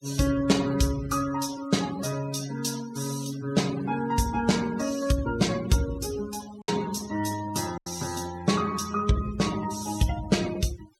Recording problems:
noise reduction artefacts; signal-to-artefact ratio 15 dB
packet loss; 1.3% of the sound replaced, filled with silence

